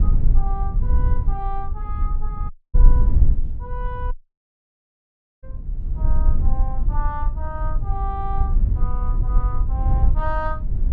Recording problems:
rumble; below 58 Hz, strongest tone 20 Hz, SNR -10 dB
dropout; at 2.5 s and at 4 s for 1.5 s

